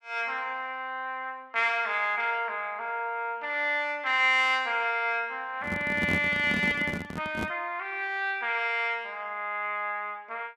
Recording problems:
handling noise; from 5.5 to 7.5 s; peak +1 dB vs average level

